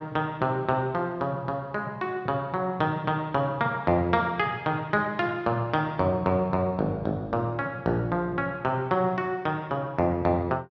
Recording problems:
none

